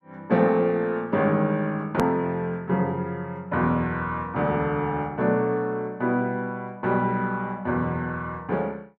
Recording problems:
click at an edit; at 2 s

